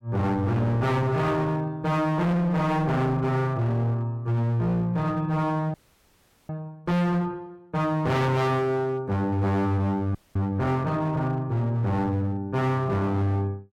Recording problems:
distorted audio; hard clipping, signal-to-distortion ratio 7 dB
frozen audio; at 5.5 s for 1 s and at 10 s

